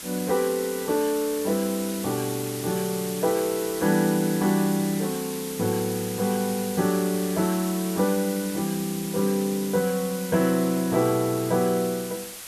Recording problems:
hiss; slope 0 dB per octave, SNR 10 dB

